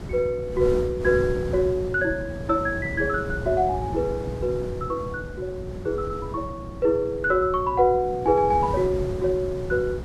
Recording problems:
hum; 60 Hz, harmonics up to 660 Hz, SNR 17 dB
wind noise; below 250 Hz, SNR 10 dB

